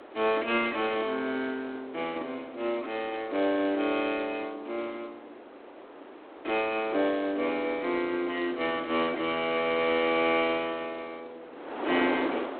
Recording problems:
telephone audio; 260 Hz to 3.8 kHz, G.726
wind on the microphone; below 1 kHz, SNR 13 dB

